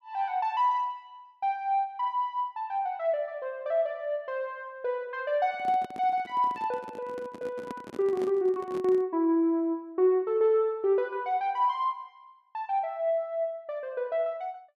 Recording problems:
microphone handling noise; from 5.5 to 9 s; peak -6 dB vs average level

